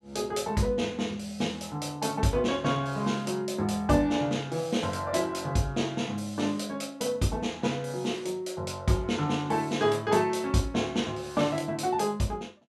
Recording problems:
none

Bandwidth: 13 kHz